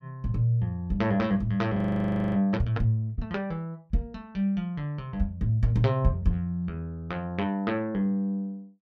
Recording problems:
frozen audio; at 2 s for 0.5 s

